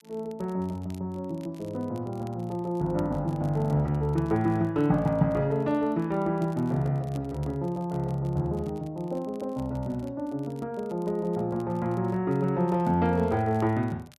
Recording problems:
crackle; vinyl, SNR 30 dB

